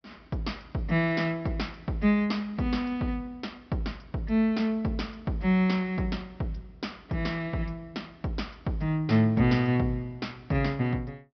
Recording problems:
treble cut off; nothing above 5.5 kHz

